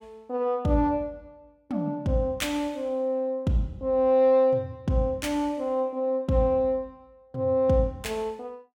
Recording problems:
none

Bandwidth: 17 kHz